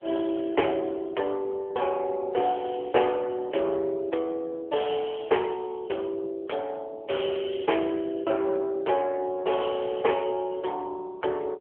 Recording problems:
phone line; 340 Hz to 3.2 kHz, AMR-NB

